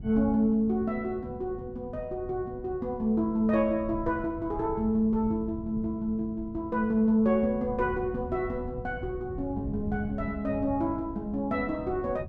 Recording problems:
wind noise; below 140 Hz, SNR 13 dB

